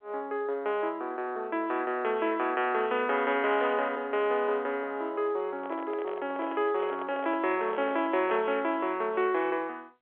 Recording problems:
telephone audio; 300 Hz to 3.4 kHz, G.711
microphone handling noise; from 5.5 to 8.5 s; peak -7 dB vs average level

